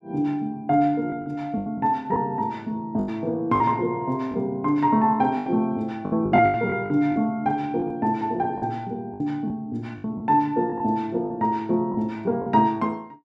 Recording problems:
packet loss; 9% of the sound replaced, filled with the last packet

